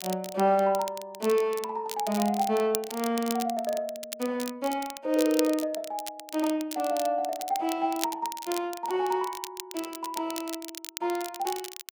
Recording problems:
crackle; vinyl, SNR 10 dB

